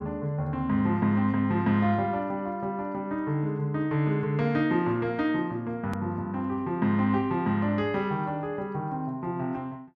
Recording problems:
edit click; at 6 s

